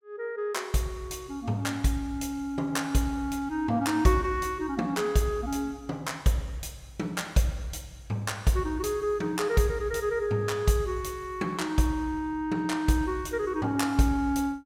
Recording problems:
none

